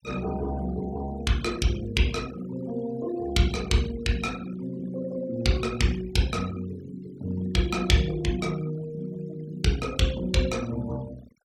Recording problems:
denoising artefacts; signal-to-artefact ratio 19 dB

